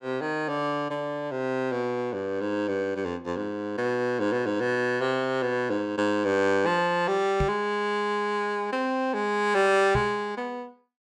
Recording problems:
microphone bump; at 7.5 s and at 10 s; peak +1 dB vs average level

